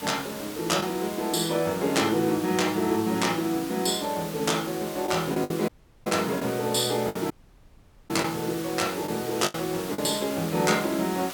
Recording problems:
background hiss; slope -1 dB per octave, SNR 11 dB
packet loss; 4% of the sound replaced, filled with the last packet
dropout; at 5.5 s and at 7.5 s for 1 s

